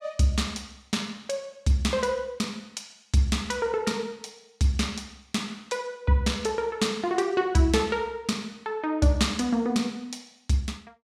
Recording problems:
none

